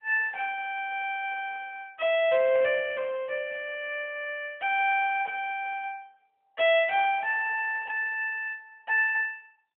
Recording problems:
phone line; 280 Hz to 3.2 kHz, AMR-NB

